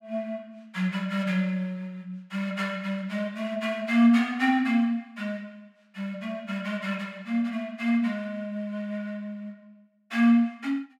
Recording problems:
none

